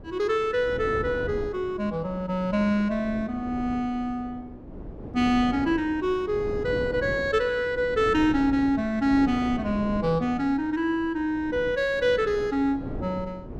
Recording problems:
wind noise; below 380 Hz, SNR 13 dB

